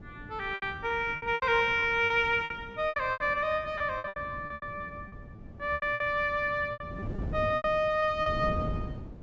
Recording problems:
treble cut off; nothing above 8 kHz
wind on the microphone; below 230 Hz, SNR 13 dB
packet loss; 16% of the sound replaced, filled with repeated pitch periods

